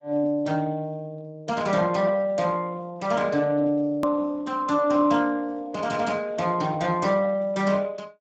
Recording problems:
lossy compression; Speex, log-spectral distance 3 dB
edit click; at 4 s

